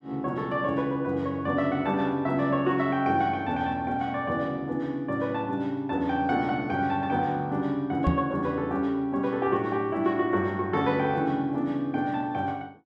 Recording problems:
microphone bump; at 8 s; peak +6 dB vs average level

